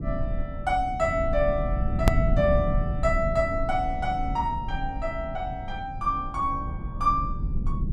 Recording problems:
low-frequency rumble; below 130 Hz, SNR 3 dB
hard cut with a click; at 2 s

